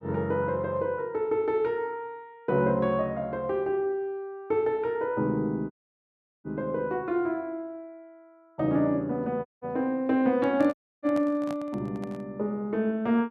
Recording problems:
audio cutting out; at 5.5 s for 0.5 s, at 9.5 s and at 11 s
handling noise; from 10 to 12 s; peak -7 dB vs average level

